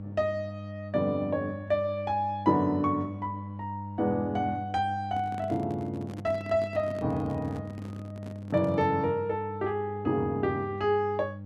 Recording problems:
electrical hum; 50 Hz, harmonics up to 600 Hz, SNR 11 dB
handling noise; from 5 to 9 s; peak -9 dB vs average level

